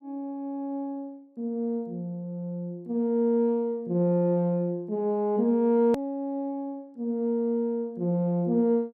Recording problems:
hard cut with a click; at 6 s

